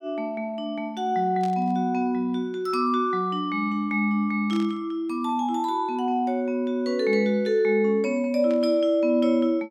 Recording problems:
static burst; at 1.5 s, at 4.5 s and at 8.5 s; peak -14 dB vs average level

